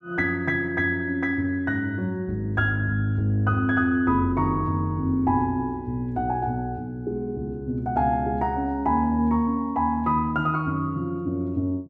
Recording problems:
none

